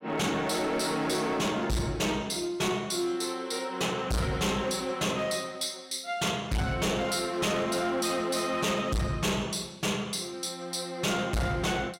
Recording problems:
distortion; hard clipping, signal-to-distortion ratio 6 dB

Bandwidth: 16 kHz